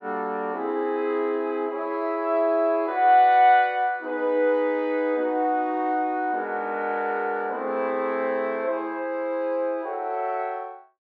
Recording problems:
none

